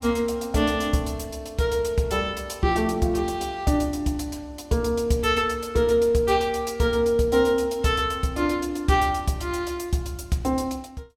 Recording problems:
none

